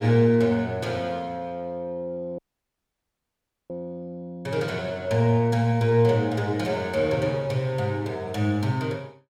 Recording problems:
dropout; at 2.5 s for 1.5 s

